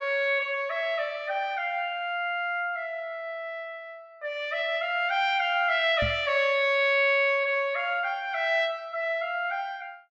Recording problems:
microphone thump; at 6 s; peak -3 dB vs average level

